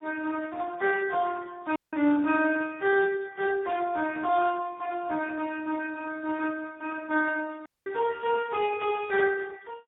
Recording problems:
low-pass filter; nothing above 3.6 kHz
lossy codec; MP3, then Speex, log-spectral distance 3 dB
dropout; at 2 s and at 7.5 s

